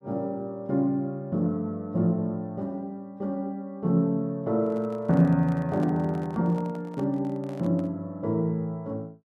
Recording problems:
microphone handling noise; from 4.5 to 8 s; peak -10 dB vs average level

